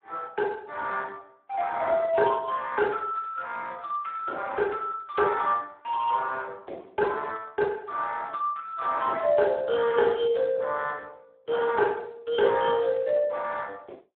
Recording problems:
phone line; 300 Hz to 2.8 kHz, Speex

